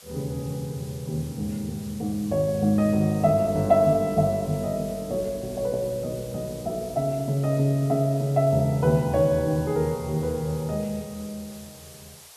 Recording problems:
hiss; SNR 20 dB

